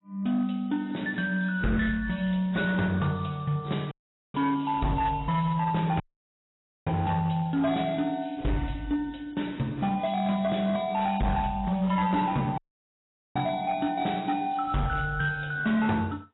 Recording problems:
codec artefacts; AAC, log-spectral distance 4 dB, nothing above 3.9 kHz
distortion; hard clipping, signal-to-distortion ratio 12 dB
dropout; at 4 s, at 6 s for 1 s and at 13 s for 1 s

